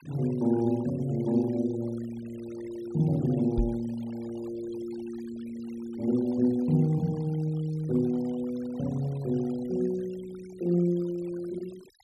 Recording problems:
noise reduction artefacts; signal-to-artefact ratio 22 dB
microphone thump; at 3.5 s; peak +3 dB vs average level

